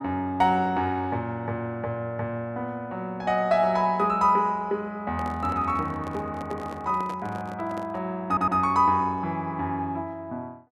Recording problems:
handling noise; from 5 to 8 s; peak -8 dB vs average level
stutter; at 8.5 s

